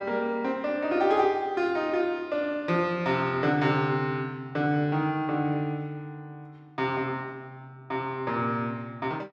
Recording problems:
none

